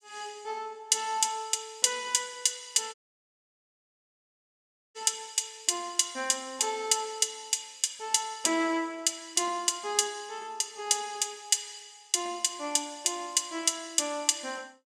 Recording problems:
audio cutting out; at 3 s for 2 s

